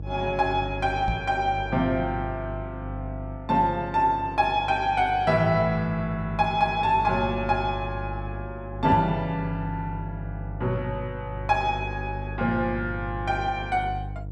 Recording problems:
electrical hum; 50 Hz, harmonics up to 500 Hz, SNR 10 dB
knock on the microphone; at 1 s and at 9 s; peak +2 dB vs average level

